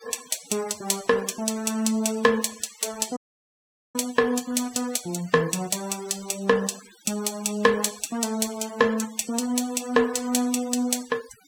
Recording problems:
noise reduction artefacts; signal-to-artefact ratio 18 dB
dropout; at 3 s for 1 s

